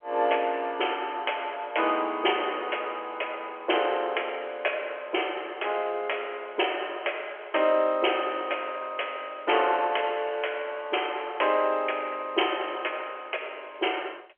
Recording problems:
telephone audio; 340 Hz to 3.2 kHz, G.711

